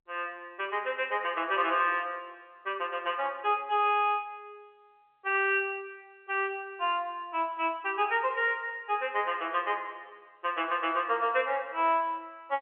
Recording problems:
phone line; 280 Hz to 3.2 kHz, G.711

